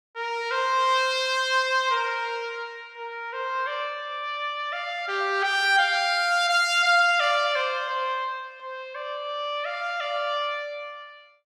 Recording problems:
none

